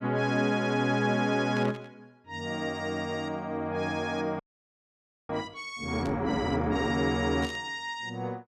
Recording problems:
burst of static; at 1.5 s, at 6 s and at 7.5 s; peak -9 dB vs average level
frozen audio; at 4.5 s for 1 s

